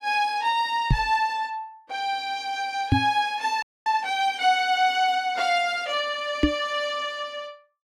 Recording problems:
knock on the microphone; at 1 s, at 3 s and at 6.5 s; peak +8 dB vs average level
frozen audio; at 3.5 s

